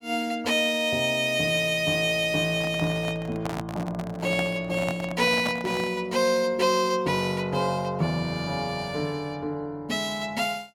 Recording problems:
handling noise; from 2.5 to 6 s; peak -2 dB vs average level

